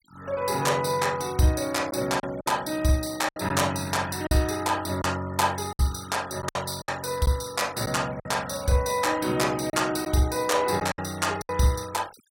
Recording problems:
noise reduction artefacts; signal-to-artefact ratio 20 dB
packet loss; 6% of the sound replaced, filled with silence

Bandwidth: 17 kHz